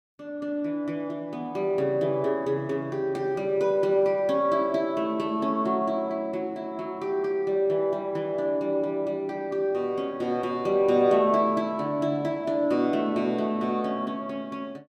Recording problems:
none

